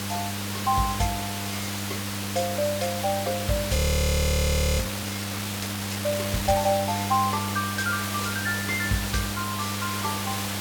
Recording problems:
hum; 50 Hz, harmonics up to 1.1 kHz, SNR 6 dB
hiss; slope -1 dB per octave, SNR 3 dB
audio freezing; at 4 s for 1 s

